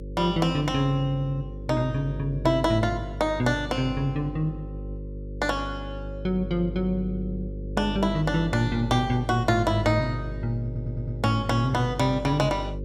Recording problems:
hum; 50 Hz, harmonics up to 550 Hz, SNR 10 dB
stutter; at 11 s

